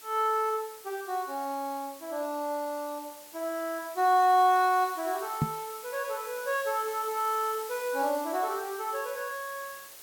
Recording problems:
hiss; slope 0 dB per octave, SNR 15 dB
microphone thump; at 5.5 s; peak +5 dB vs average level

